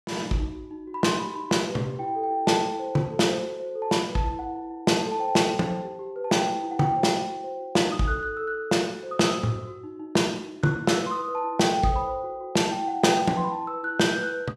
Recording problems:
none

